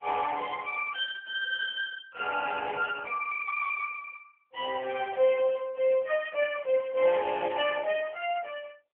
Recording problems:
telephone audio; 300 Hz to 3.3 kHz, AMR-NB

